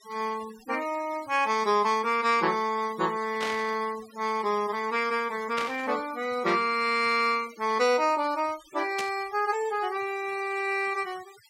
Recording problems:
noise reduction artefacts; signal-to-artefact ratio 19 dB
burst of static; at 3.5 s, at 5.5 s and at 9 s; peak -2 dB vs average level

